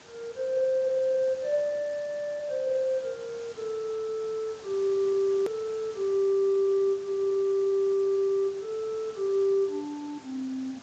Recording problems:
lossy compression; Speex, log-spectral distance 5 dB, nothing above 13.1 kHz
background hiss; slope -3 dB per octave, SNR 21 dB
edit click; at 5.5 s

